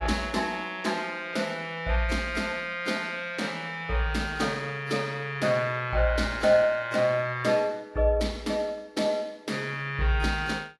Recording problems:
lossy compression; AAC, log-spectral distance 3 dB, nothing above 11.3 kHz

